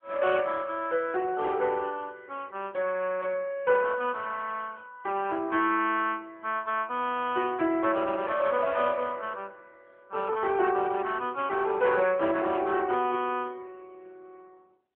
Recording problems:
phone line; 240 Hz to 3.3 kHz, AMR-NB

